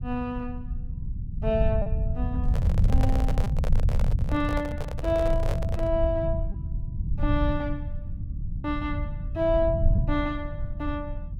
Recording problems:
rumble; below 98 Hz, SNR -1 dB
packet loss; 1.7% of the sound replaced, filled with repeated pitch periods
microphone handling noise; from 2.5 to 6 s; peak +1 dB vs average level

